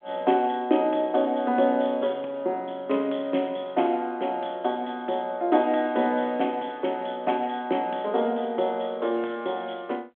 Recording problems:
phone line; 220 Hz to 3.4 kHz, G.726

